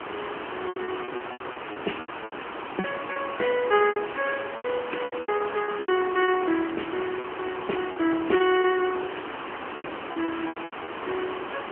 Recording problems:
phone line; 260 Hz to 3.1 kHz, AMR-NB
background hiss; SNR 8 dB
lost packets; 14% of the sound replaced, filled with repeated pitch periods

